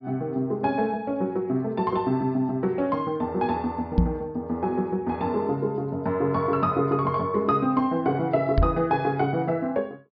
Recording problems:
low-pass filter; nothing above 5.5 kHz
knock on the microphone; at 4 s and at 8.5 s; peak +8 dB vs average level

